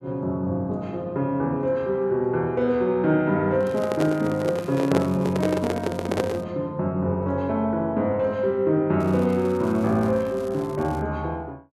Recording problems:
microphone handling noise; from 3.5 to 6.5 s; peak +3 dB vs average level
crackle; from 3.5 to 6.5 s and from 9 to 11 s; loose cable, SNR 25 dB

